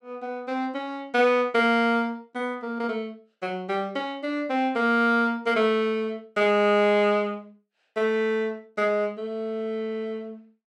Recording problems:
none

